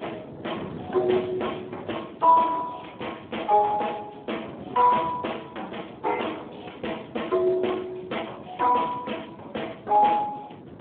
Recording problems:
telephone audio; 280 Hz to 3.4 kHz, Speex
wind on the microphone; below 460 Hz, SNR 16 dB

